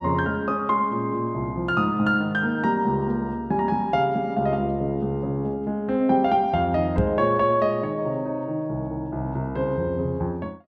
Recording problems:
microphone bump; at 7 s; peak +4 dB vs average level

